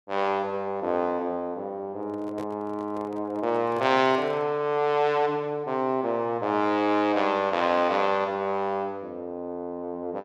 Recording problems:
microphone handling noise; from 2 to 4.5 s; peak -9 dB vs average level

